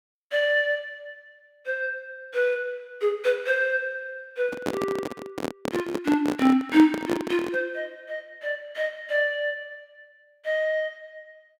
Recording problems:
microphone handling noise; from 4.5 to 7.5 s; peak +2 dB vs average level

